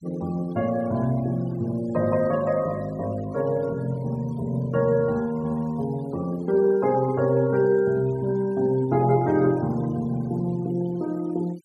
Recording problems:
denoising artefacts; signal-to-artefact ratio 23 dB

